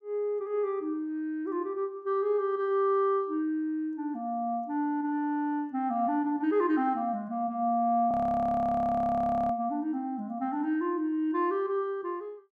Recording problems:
frozen audio; at 8 s for 1.5 s

